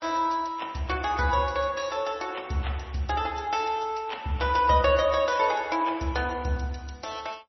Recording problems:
lossy compression; MP3, log-spectral distance 4 dB, nothing above 5.8 kHz

